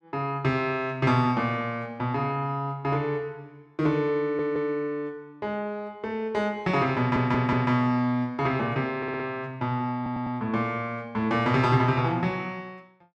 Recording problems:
audio stuttering; 4 times, first at 4 s

